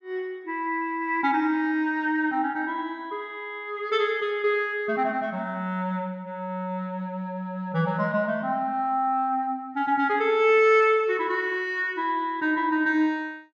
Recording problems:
none

